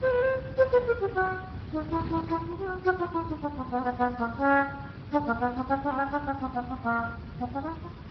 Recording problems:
treble cut off; nothing above 5 kHz
codec artefacts; Vorbis, then Speex, log-spectral distance 3 dB
wind noise; below 250 Hz, SNR 11 dB

